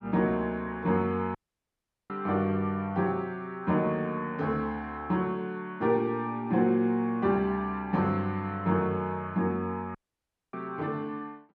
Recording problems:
dropout; at 1.5 s for 1 s and at 10 s for 0.5 s

